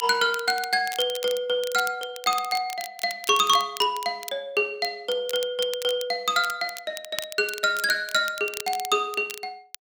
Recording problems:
crackle; vinyl, SNR 13 dB

